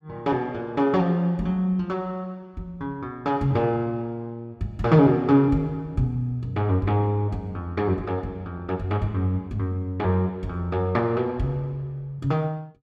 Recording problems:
none

